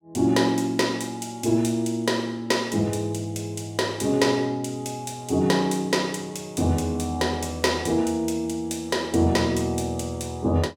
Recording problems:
none

